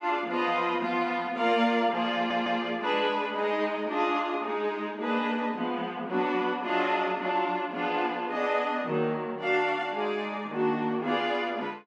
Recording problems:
audio stuttering; at 2 s

